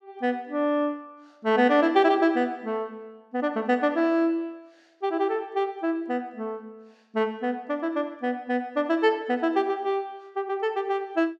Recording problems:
none

